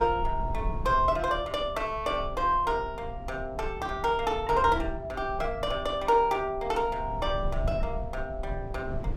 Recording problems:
rumble; below 82 Hz, SNR 10 dB

